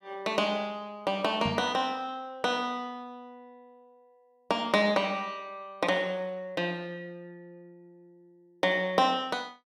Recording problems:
knock on the microphone; at 1.5 s; peak 0 dB vs average level

